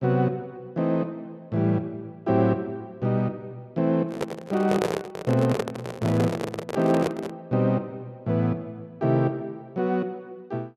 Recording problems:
microphone handling noise; from 4 to 7.5 s; peak +4 dB vs average level

